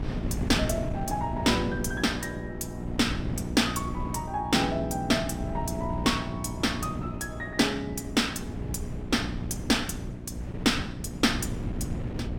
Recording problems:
electrical hum; 60 Hz, harmonics up to 720 Hz, SNR 8 dB
wind noise; below 230 Hz, SNR 8 dB

